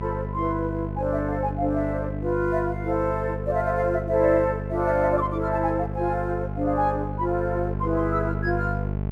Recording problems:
electrical hum; 50 Hz, harmonics up to 900 Hz, SNR 6 dB

